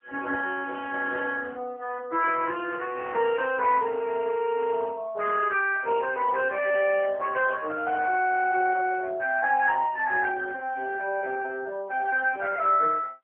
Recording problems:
phone line; 240 Hz to 3.1 kHz, AMR-NB

